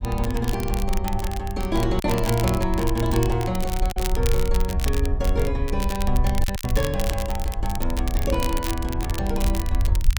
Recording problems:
low-frequency rumble; below 66 Hz, SNR 1 dB
crackle; vinyl, SNR 9 dB
lost packets; 2% of the sound replaced, filled with silence

